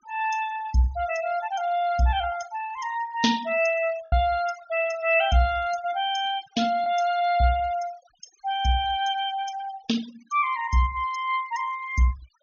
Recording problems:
treble cut off; nothing above 6.7 kHz
noise reduction artefacts; signal-to-artefact ratio 19 dB
lost packets; 0.7% of the sound replaced, filled with the last packet

